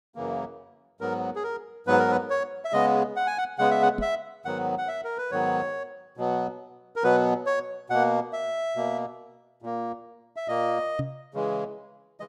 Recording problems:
microphone thump; at 4 s and at 11 s; peak 0 dB vs average level

